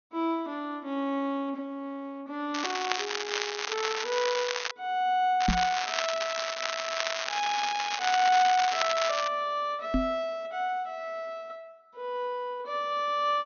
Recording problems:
treble cut off; nothing above 6.5 kHz
crackle; from 2.5 to 4.5 s and from 5.5 to 9.5 s; loose cable, SNR 2 dB
knock on the microphone; at 5.5 s and at 10 s; peak +7 dB vs average level

